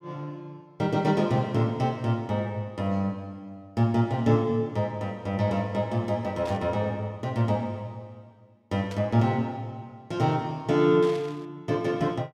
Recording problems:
burst of static; at 6.5 s, at 9 s and at 11 s; peak -12 dB vs average level

